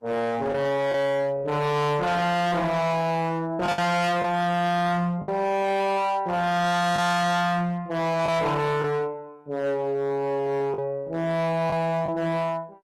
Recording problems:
codec artefacts; Opus, log-spectral distance 2 dB, nothing above 13.1 kHz
distorted audio; hard clipping, signal-to-distortion ratio 6 dB
lost packets; 3% of the sound replaced, filled with the last packet

